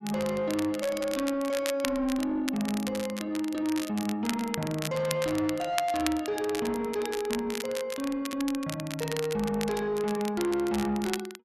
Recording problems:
distorted audio; soft clipping, signal-to-distortion ratio 10 dB
crackling; vinyl, SNR 9 dB

